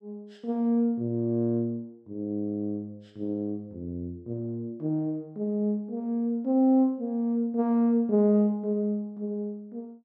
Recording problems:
none

